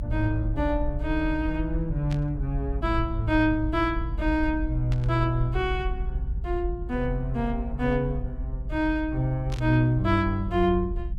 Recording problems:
rumble; below 60 Hz, SNR 6 dB
burst of static; at 2 s, at 5 s and at 9.5 s; peak -9 dB vs average level

